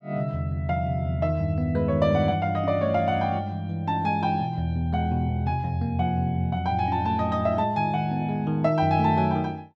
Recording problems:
none

